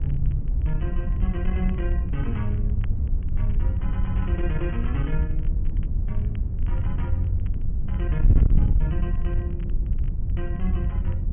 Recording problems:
low-pass filter; nothing above 3.2 kHz
distortion; soft clipping, signal-to-distortion ratio 8 dB
low-frequency rumble; below 68 Hz, SNR 3 dB
wind noise; below 74 Hz, SNR -5 dB
crackle; vinyl, SNR 27 dB

